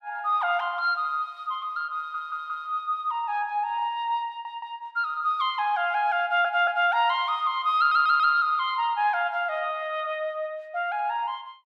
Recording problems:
audio stuttering; 4 times, first at 2 s

